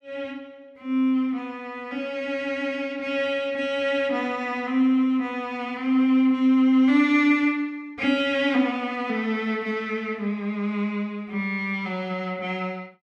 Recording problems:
none

